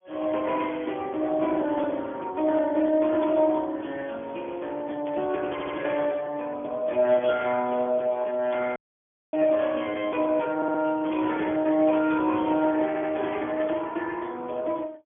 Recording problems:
telephone audio; 260 Hz to 2.8 kHz, Speex
static burst; 4 times, first at 2.5 s; peak -12 dB vs average level
audio stuttering; at 5.5 s, at 11 s and at 13 s
audio cutting out; at 9 s for 0.5 s

